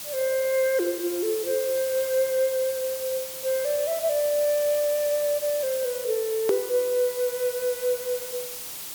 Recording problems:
hiss; SNR 8 dB
edit click; at 6.5 s

